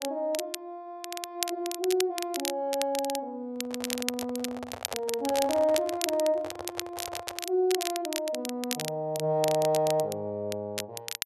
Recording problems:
crackling; vinyl, SNR 6 dB
handling noise; from 3.5 to 7.5 s; peak -3 dB vs average level

